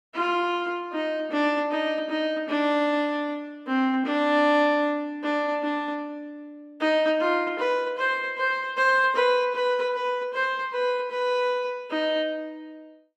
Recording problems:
none

